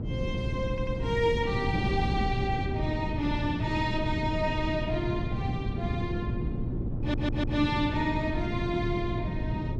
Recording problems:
hum; 60 Hz, harmonics up to 600 Hz, SNR 9 dB
wind on the microphone; below 230 Hz, SNR 1 dB
stutter; at 0.5 s and at 7 s

